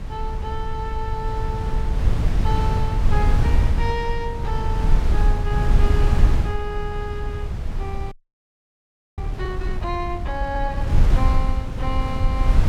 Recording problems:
wind noise; below 80 Hz, SNR -7 dB
frozen audio; at 8 s for 1 s

